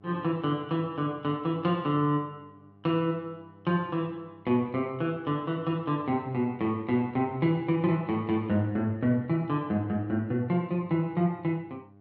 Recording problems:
mains hum; 50 Hz, harmonics up to 1.2 kHz, SNR 26 dB

